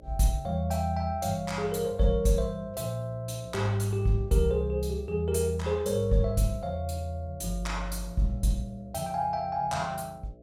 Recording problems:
hum; 60 Hz, harmonics up to 660 Hz, SNR 24 dB

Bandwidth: 16 kHz